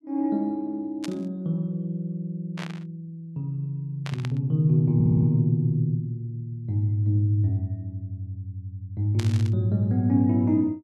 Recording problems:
burst of static; 4 times, first at 1 s; peak -6 dB vs average level
stutter; at 5 s

